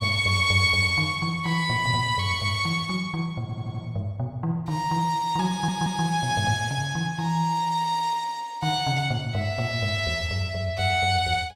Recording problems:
stutter; at 3.5 s and at 5.5 s

